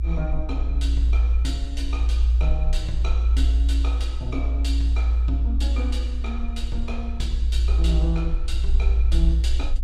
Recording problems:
low-frequency rumble; below 60 Hz, strongest tone 58 Hz, SNR -10 dB

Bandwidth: 14.5 kHz